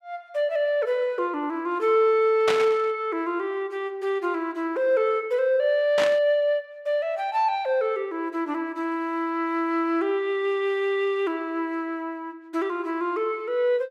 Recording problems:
burst of static; at 2.5 s and at 6 s; peak +2 dB vs average level

